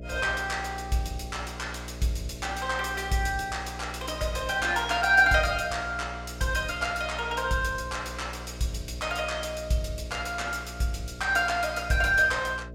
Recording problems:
electrical hum; 60 Hz, harmonics up to 660 Hz, SNR 13 dB

